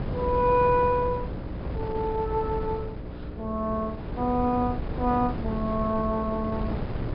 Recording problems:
treble missing; nothing above 5.2 kHz
hum; 60 Hz, harmonics up to 600 Hz, SNR 14 dB
wind noise; below 340 Hz, SNR 7 dB

